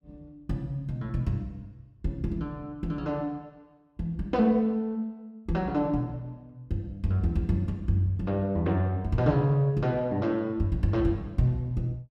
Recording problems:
none

